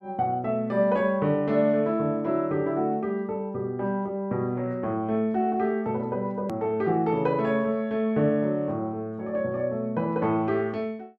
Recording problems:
hard cut with a click; at 6.5 s

